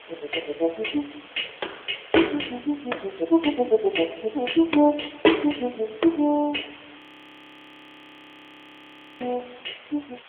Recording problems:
phone line; 320 Hz to 3.4 kHz, AMR-NB
background hiss; SNR 21 dB
audio freezing; at 7 s for 2 s

